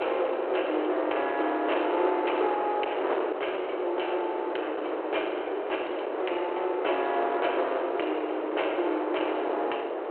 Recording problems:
telephone audio; 320 Hz to 3.2 kHz, G.726
distortion; hard clipping, signal-to-distortion ratio 11 dB
wind on the microphone; below 830 Hz, SNR 2 dB

